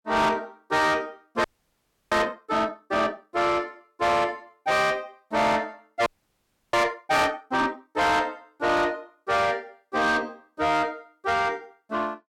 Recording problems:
distorted audio; soft clipping, signal-to-distortion ratio 8 dB
audio freezing; at 1.5 s for 0.5 s and at 6 s for 0.5 s

